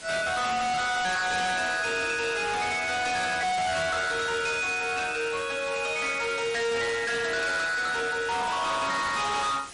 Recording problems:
lossy compression; MP3, log-spectral distance 9 dB, nothing above 10.4 kHz
distortion; hard clipping, signal-to-distortion ratio 6 dB
hiss; slope -1 dB per octave, SNR 15 dB

